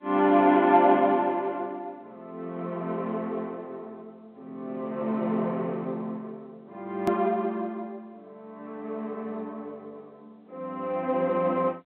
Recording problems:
telephone audio; 240 Hz to 3.4 kHz, G.711
hard cut with a click; at 7 s

